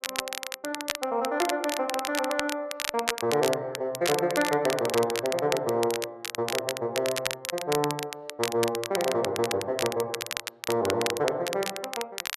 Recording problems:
crackle; vinyl, SNR 5 dB

